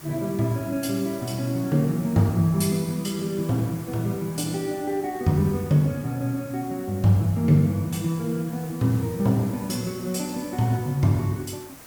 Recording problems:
background hiss; slope -3 dB per octave, SNR 19 dB

